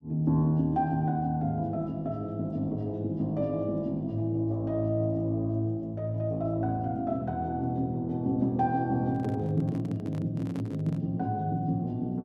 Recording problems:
handling noise; from 9 to 11 s; peak -11 dB vs average level

